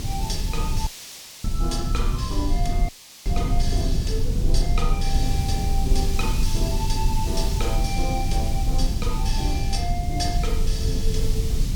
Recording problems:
hiss; SNR 7 dB
low-frequency rumble; below 70 Hz, strongest tone 24 Hz, SNR -4 dB
wind noise; below 140 Hz, SNR 6 dB
audio cutting out; at 1 s for 0.5 s and at 3 s

